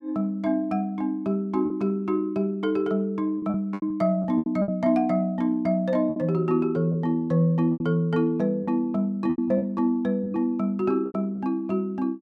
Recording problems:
packet loss; 7% of the sound replaced, filled with repeated pitch periods

